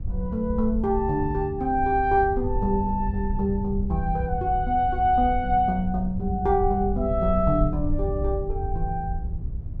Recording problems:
wind noise; below 80 Hz, SNR 7 dB

